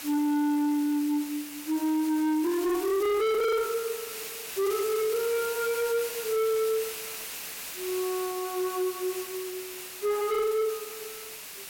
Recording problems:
distortion; hard clipping, signal-to-distortion ratio 8 dB
hiss; SNR 9 dB

